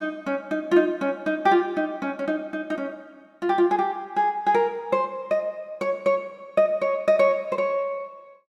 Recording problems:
none

